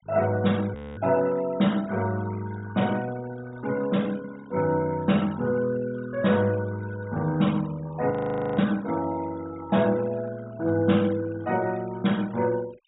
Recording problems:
treble cut off; nothing above 4 kHz
denoising artefacts; signal-to-artefact ratio 20 dB
audio freezing; at 1 s and at 8 s

